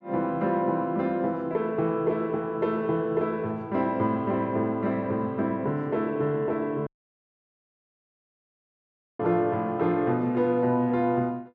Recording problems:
audio cutting out; at 7 s for 2.5 s

